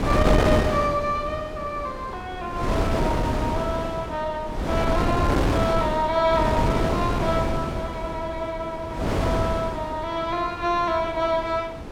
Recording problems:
wind on the microphone; below 600 Hz, SNR 0 dB

